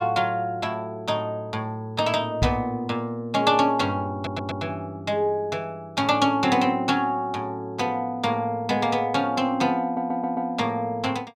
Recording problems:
knock on the microphone; at 2.5 s; peak +4 dB vs average level
audio stuttering; at 4 s and at 10 s

